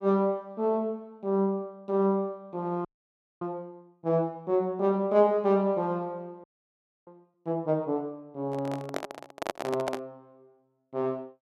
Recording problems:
frozen audio; at 3 s for 0.5 s and at 6.5 s for 0.5 s
handling noise; from 8.5 to 10 s; peak +1 dB vs average level

